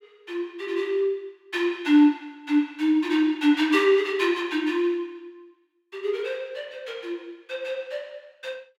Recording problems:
none

